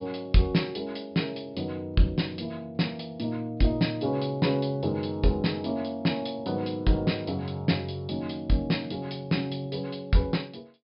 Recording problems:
treble cut off; nothing above 5.5 kHz

